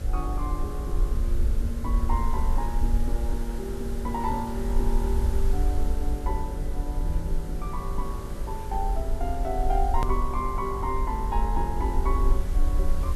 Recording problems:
hum; 50 Hz, harmonics up to 600 Hz, SNR 7 dB
background hiss; SNR 13 dB
rumble; below 52 Hz, SNR -3 dB
hard cut with a click; at 10 s

